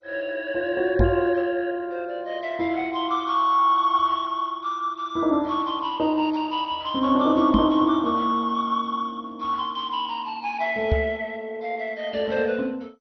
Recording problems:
lossy codec; MP2, log-spectral distance 3 dB, nothing above 5.8 kHz
knock on the microphone; at 1 s, at 7.5 s and at 11 s; peak +7 dB vs average level

